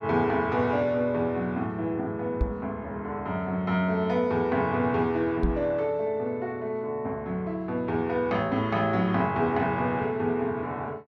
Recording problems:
knock on the microphone; at 2.5 s and at 5.5 s; peak +4 dB vs average level

